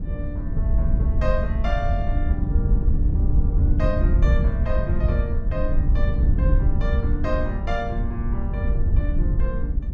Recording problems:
wind noise; below 76 Hz, SNR -8 dB

